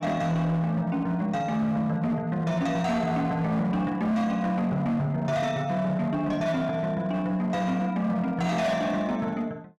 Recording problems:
distorted audio; hard clipping, signal-to-distortion ratio 11 dB

